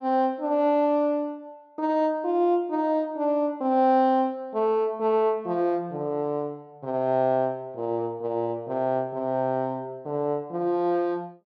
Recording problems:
none

